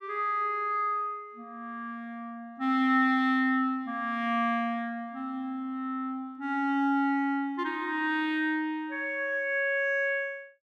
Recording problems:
none

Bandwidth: 14.5 kHz